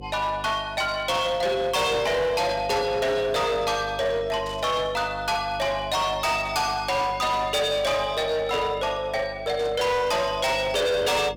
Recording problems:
distorted audio; hard clipping, uneven, signal-to-distortion ratio 8 dB
hum; 50 Hz, harmonics up to 550 Hz, SNR 18 dB
burst of static; 4 times, first at 2.5 s; peak -13 dB vs average level

